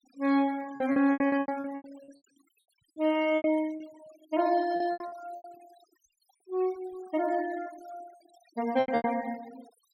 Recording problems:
denoising artefacts; signal-to-artefact ratio 21 dB
lost packets; 13% of the sound replaced, filled with repeated pitch periods

